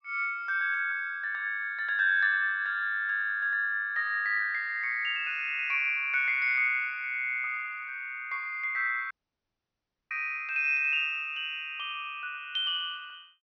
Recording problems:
treble missing; nothing above 6.2 kHz
dropout; at 9 s for 1 s

